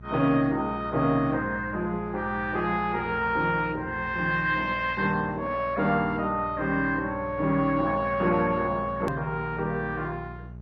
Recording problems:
lossy compression; MP2, log-spectral distance 3 dB, nothing above 13.1 kHz
hum; 60 Hz, harmonics up to 660 Hz, SNR 16 dB
hard cut with a click; at 9 s

